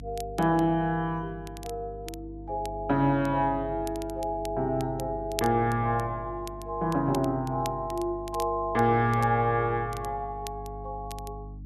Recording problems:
hum; 50 Hz, harmonics up to 300 Hz, SNR 15 dB
crackle; vinyl, SNR 19 dB

